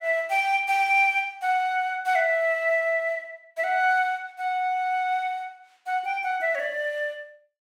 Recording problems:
none

